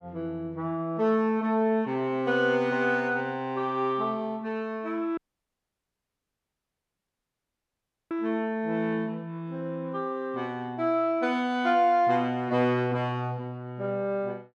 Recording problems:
audio cutting out; at 5 s for 3 s

